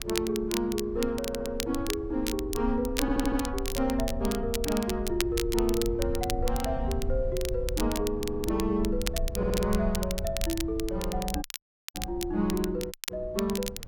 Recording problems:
low-frequency rumble; below 110 Hz, SNR 15 dB
wind on the microphone; below 66 Hz, SNR 8 dB
crackle; vinyl, SNR 7 dB
stutter; 4 times, first at 1 s
dropout; at 11 s for 0.5 s and at 13 s

